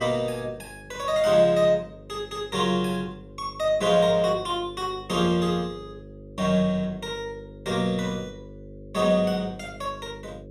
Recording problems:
hum; 50 Hz, harmonics up to 550 Hz, SNR 19 dB

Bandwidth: 14 kHz